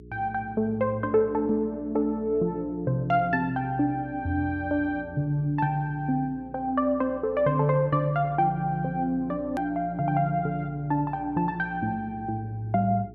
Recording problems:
electrical hum; 60 Hz, harmonics up to 420 Hz, SNR 20 dB
hard cut with a click; at 9.5 s

